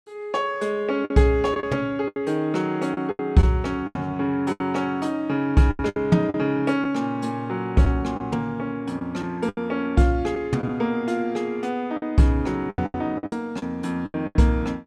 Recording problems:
packet loss; 9% of the sound replaced, filled with the last packet

